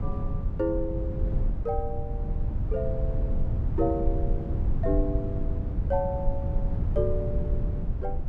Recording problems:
low-frequency rumble; below 98 Hz, SNR -2 dB

